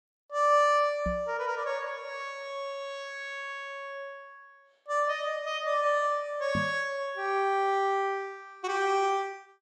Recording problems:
knock on the microphone; at 1 s and at 6.5 s; peak 0 dB vs average level

